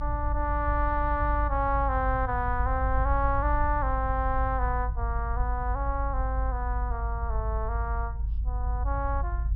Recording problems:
treble cut off; nothing above 5.7 kHz
low-frequency rumble; below 58 Hz, strongest tone 52 Hz, SNR 1 dB

